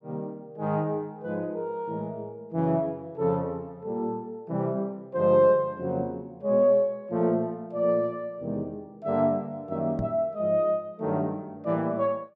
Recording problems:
microphone thump; at 10 s; peak -2 dB vs average level

